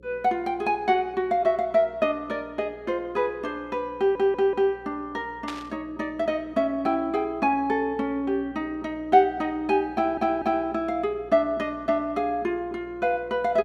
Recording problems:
hum; 60 Hz, harmonics up to 540 Hz, SNR 25 dB
audio stuttering; at 4 s and at 10 s
burst of static; at 5.5 s; peak -6 dB vs average level

